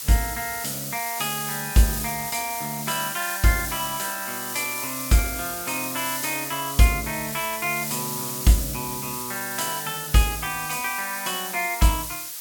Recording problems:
background hiss; slope +3 dB per octave, SNR 4 dB

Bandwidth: 18 kHz